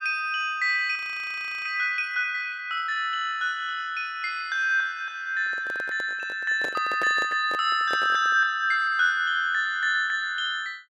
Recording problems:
frozen audio; at 1 s for 0.5 s
microphone handling noise; from 5.5 to 8.5 s; peak -5 dB vs average level

